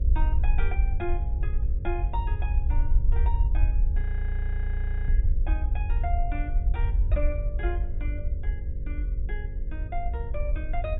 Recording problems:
low-pass filter; nothing above 4 kHz
electrical hum; 50 Hz, harmonics up to 550 Hz, SNR 4 dB
rumble; below 60 Hz, SNR -10 dB
audio freezing; at 4 s for 1 s

